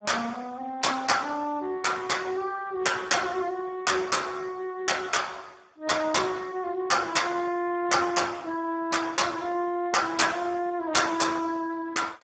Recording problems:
codec artefacts; Speex, log-spectral distance 5 dB, nothing above 7.6 kHz

